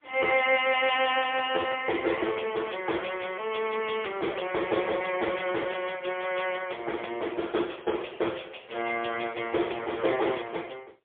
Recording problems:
phone line; 280 Hz to 3.4 kHz, AMR-NB, then MP3

